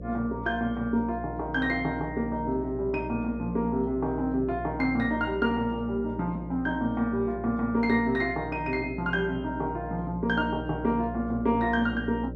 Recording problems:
hum; 60 Hz, harmonics up to 600 Hz, SNR 11 dB

